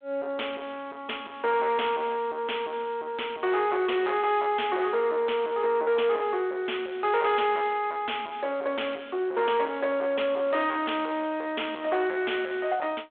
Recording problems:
phone line; 300 Hz to 3.5 kHz, G.726
distortion; soft clipping, signal-to-distortion ratio 11 dB

